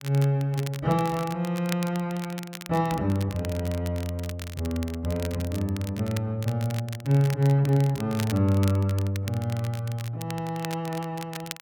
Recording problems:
crackle; vinyl, SNR 15 dB

